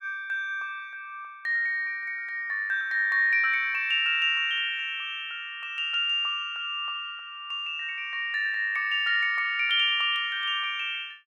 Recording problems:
none

